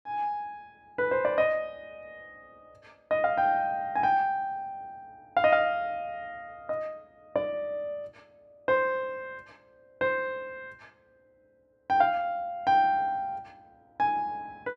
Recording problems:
none

